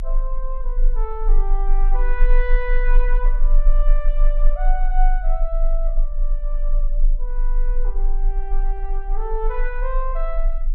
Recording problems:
rumble; below 28 Hz, strongest tone 24 Hz, SNR -8 dB

